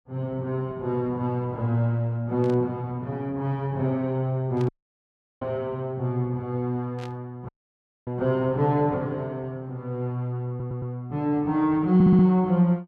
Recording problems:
static burst; at 2.5 s, at 4.5 s and at 7 s; peak -14 dB vs average level
audio cutting out; at 4.5 s for 0.5 s and at 7.5 s for 0.5 s
audio stuttering; at 10 s and at 12 s

